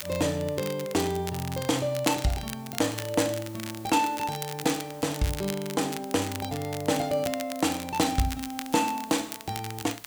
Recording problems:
hiss; slope -2 dB per octave, SNR 22 dB
crackle; vinyl, SNR 10 dB

